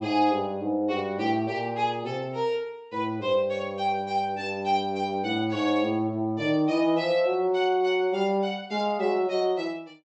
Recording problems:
treble cut off; nothing above 7.9 kHz

